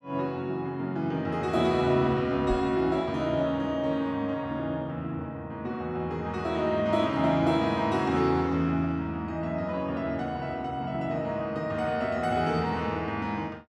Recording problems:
microphone bump; at 2.5 s; peak -2 dB vs average level

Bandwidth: 12.5 kHz